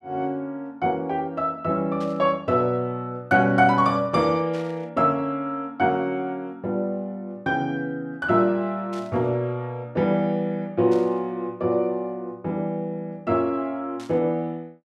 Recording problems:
static burst; 5 times, first at 2 s; peak -14 dB vs average level

